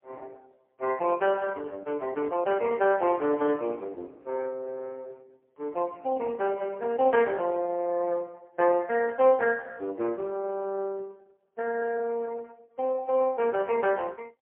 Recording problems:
phone line; 280 Hz to 2.9 kHz, AMR-NB, then MP3

